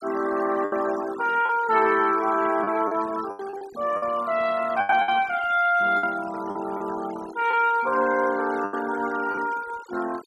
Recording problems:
denoising artefacts; signal-to-artefact ratio 17 dB
lost packets; 7% of the sound replaced, filled with the last packet

